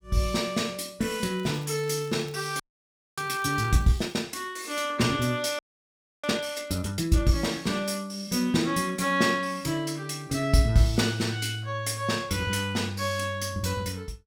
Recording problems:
crackle; from 1.5 to 4 s; loose cable, SNR 26 dB
audio freezing; at 2.5 s for 0.5 s and at 5.5 s for 0.5 s

